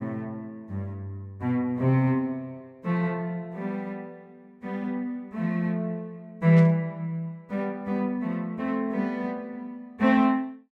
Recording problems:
static burst; at 6.5 s; peak -13 dB vs average level

